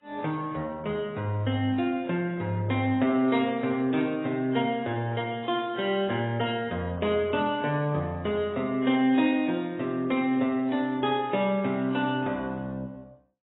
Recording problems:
codec artefacts; AAC, log-spectral distance 2 dB, nothing above 3.5 kHz
burst of static; at 4 s; peak -14 dB vs average level

